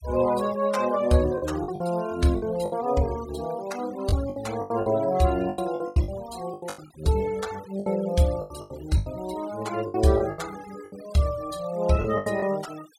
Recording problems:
denoising artefacts; signal-to-artefact ratio 18 dB
packet loss; 11% of the sound replaced, filled with the last packet

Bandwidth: 16 kHz